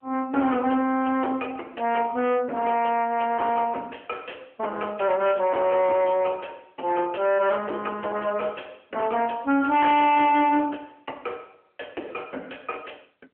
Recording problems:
phone line; 240 Hz to 3.3 kHz, AMR-NB
distortion; soft clipping, signal-to-distortion ratio 9 dB

